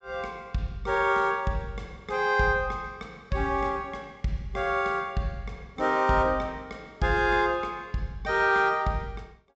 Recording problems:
treble missing; nothing above 8 kHz

